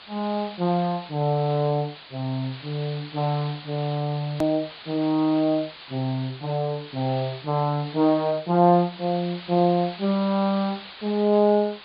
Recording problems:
low-pass filter; nothing above 4.7 kHz
hiss; SNR 16 dB
edit click; at 4.5 s

